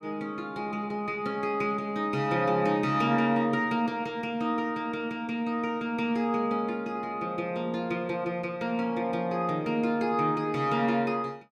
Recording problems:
none

